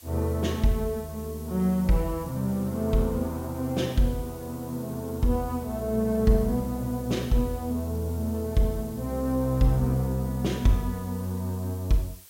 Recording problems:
hiss; slope +1 dB per octave, SNR 20 dB

